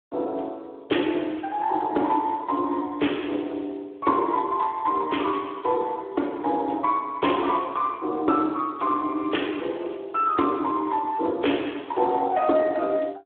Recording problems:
telephone audio; 260 Hz to 3.5 kHz, Speex

